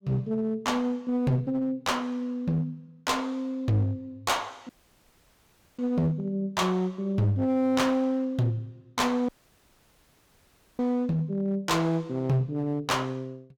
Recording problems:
distortion; hard clipping, uneven, signal-to-distortion ratio 10 dB
audio cutting out; at 4.5 s for 1 s and at 9.5 s for 1.5 s

